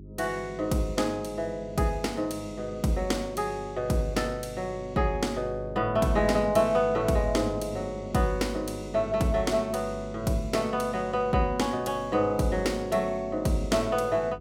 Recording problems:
electrical hum; 50 Hz, harmonics up to 400 Hz, SNR 15 dB

